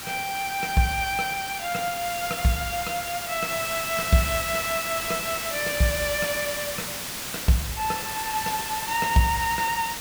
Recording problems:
hiss; slope 0 dB per octave, SNR 4 dB

